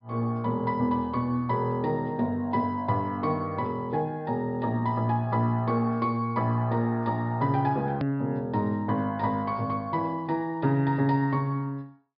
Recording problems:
low-pass filter; nothing above 5.5 kHz
hard cut with a click; at 8 s

